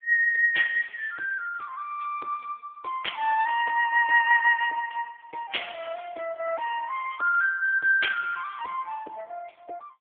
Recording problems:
phone line; 540 Hz to 3 kHz, AMR-NB

